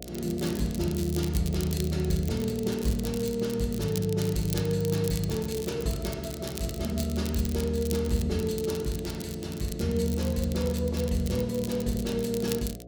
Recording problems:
electrical hum; 60 Hz, harmonics up to 720 Hz, SNR 16 dB
crackling; vinyl, SNR 12 dB

